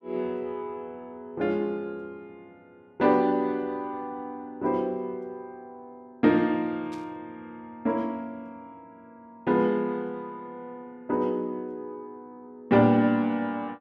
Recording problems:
static burst; at 7 s; peak -17 dB vs average level

